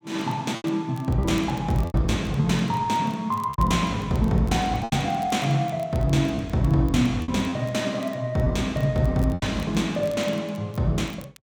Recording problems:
crackling; vinyl, SNR 27 dB
lost packets; 5% of the sound replaced, filled with repeated pitch periods

